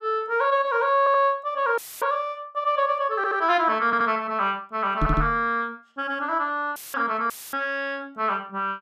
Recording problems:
audio stuttering; 4 times, first at 1 s
audio cutting out; at 2 s, at 7 s and at 7.5 s; filled with static
microphone bump; at 5 s; peak +1 dB vs average level

